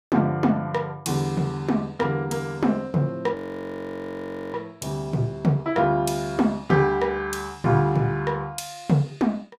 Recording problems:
audio freezing; at 3.5 s for 1 s

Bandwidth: 15.5 kHz